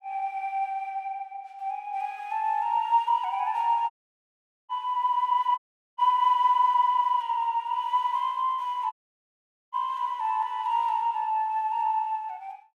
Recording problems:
audio cutting out; at 4 s for 1 s, at 5.5 s and at 9 s for 1 s

